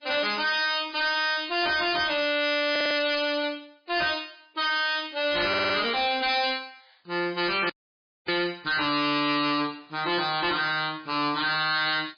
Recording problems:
codec artefacts; MP3, log-spectral distance 8 dB, nothing above 5 kHz
distorted audio; hard clipping, signal-to-distortion ratio 6 dB
stutter; at 2.5 s and at 5.5 s
audio cutting out; at 7.5 s for 0.5 s

